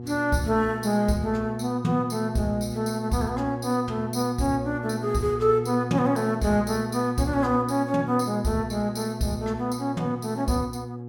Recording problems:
hum; 60 Hz, harmonics up to 840 Hz, SNR 9 dB

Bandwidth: 17 kHz